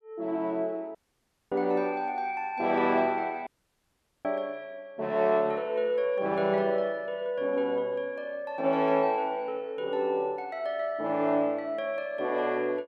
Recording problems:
audio cutting out; at 1 s for 0.5 s and at 3.5 s for 1 s

